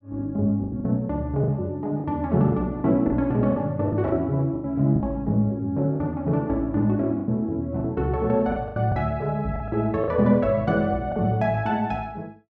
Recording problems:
packet loss; 8% of the sound replaced, filled with the last packet

